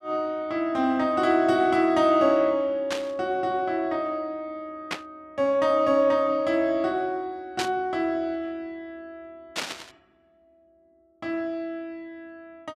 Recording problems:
burst of static; 4 times, first at 3 s; peak +1 dB vs average level

